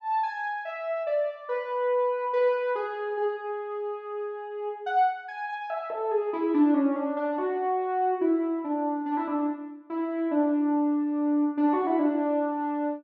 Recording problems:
none

